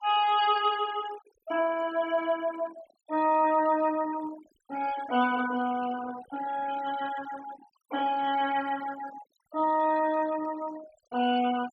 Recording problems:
denoising artefacts; signal-to-artefact ratio 16 dB

